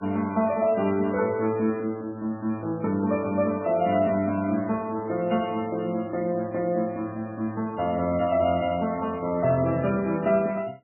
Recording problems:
lossy codec; MP3, log-spectral distance 2 dB, nothing above 2.4 kHz

